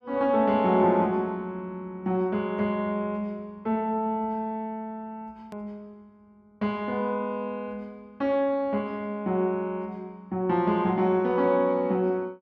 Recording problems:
edit click; at 5.5 s

